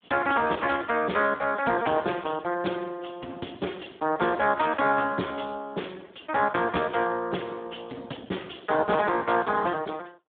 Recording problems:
phone line; 190 Hz to 3.5 kHz, Speex

